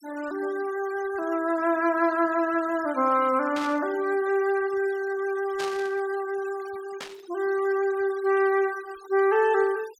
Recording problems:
denoising artefacts; signal-to-artefact ratio 21 dB
burst of static; at 3.5 s, at 5.5 s and at 7 s; peak -7 dB vs average level

